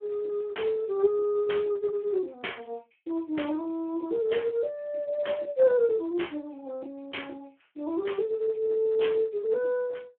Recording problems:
telephone audio; 260 Hz to 3.3 kHz, Speex

